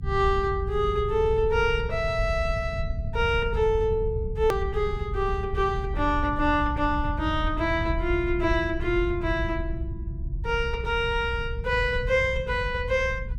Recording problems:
rumble; below 94 Hz, SNR 6 dB
hard cut with a click; at 4.5 s

